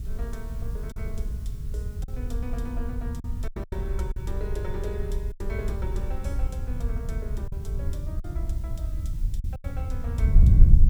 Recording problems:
background hiss; slope +1 dB per octave, SNR 18 dB
wind noise; below 86 Hz, SNR -9 dB
packet loss; 5% of the sound replaced, filled with silence

